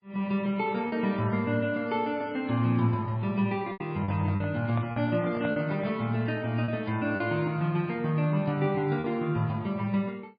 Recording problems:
lossy codec; MP3, log-spectral distance 2 dB, nothing above 4.8 kHz
lost packets; 4% of the sound replaced, filled with repeated pitch periods
microphone handling noise; from 4 to 6 s; peak -4 dB vs average level

